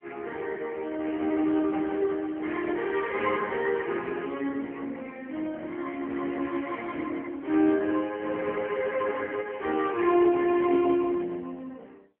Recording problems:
phone line; 240 Hz to 3.1 kHz, AMR-NB

